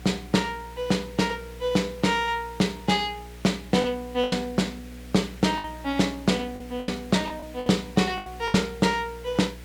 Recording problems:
electrical hum; 60 Hz, harmonics up to 660 Hz, SNR 18 dB
hiss; SNR 23 dB
lost packets; 6% of the sound replaced, filled with the last packet

